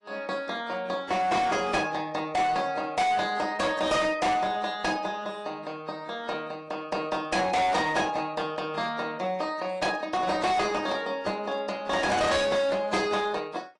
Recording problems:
lossy compression; AAC, log-spectral distance 3 dB, nothing above 10.4 kHz
distorted audio; hard clipping, uneven, signal-to-distortion ratio 6 dB

